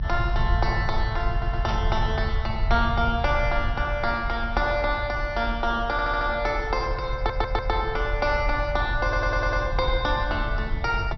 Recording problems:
treble cut off; nothing above 5.8 kHz
rumble; below 76 Hz, SNR 4 dB
stutter; 4 times, first at 1.5 s
static burst; at 1.5 s; peak -7 dB vs average level

